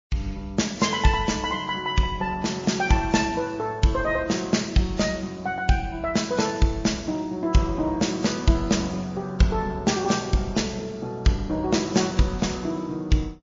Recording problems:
lossy codec; MP3, then Vorbis, log-spectral distance 4 dB, nothing above 6.3 kHz

